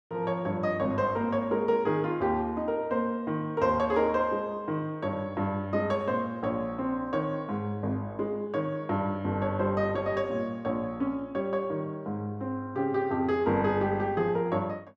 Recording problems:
none

